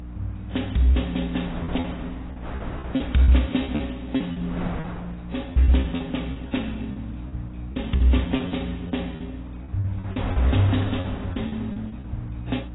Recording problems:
codec artefacts; AAC, log-spectral distance 5 dB, nothing above 3.8 kHz
hum; 60 Hz, harmonics up to 300 Hz, SNR 13 dB
wind noise; below 690 Hz, SNR 14 dB
lost packets; 12% of the sound replaced, filled with repeated pitch periods

